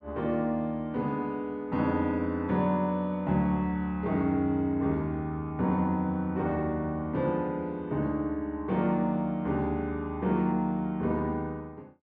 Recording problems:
none

